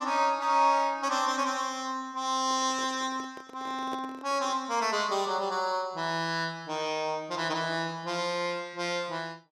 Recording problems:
microphone handling noise; from 2.5 to 4.5 s; peak -6 dB vs average level

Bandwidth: 14 kHz